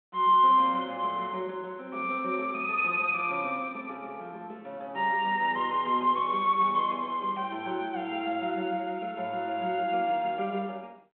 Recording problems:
telephone audio; 220 Hz to 3.5 kHz, G.726

